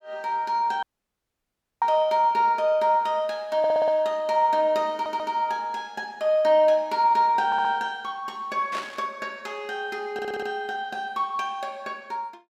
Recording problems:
dropout; at 1 s for 1 s
stutter; 4 times, first at 3.5 s
static burst; at 8.5 s; peak -6 dB vs average level

